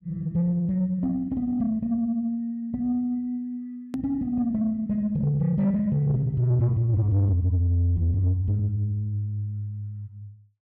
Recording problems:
distorted audio; soft clipping, signal-to-distortion ratio 11 dB
edit click; at 4 s

